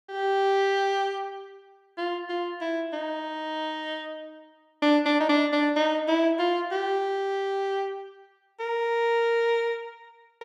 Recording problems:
none

